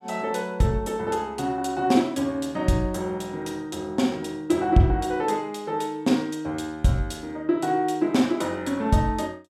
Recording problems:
none

